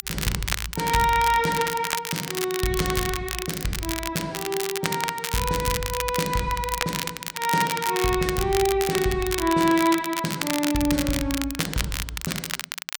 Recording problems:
crackling; vinyl, SNR 5 dB

